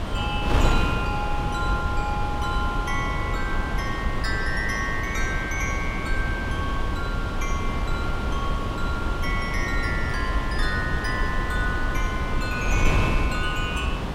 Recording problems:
wind on the microphone; below 290 Hz, SNR -2 dB

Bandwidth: 16 kHz